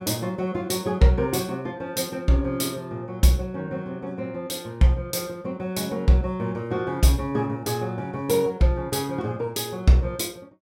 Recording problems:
none

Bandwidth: 16.5 kHz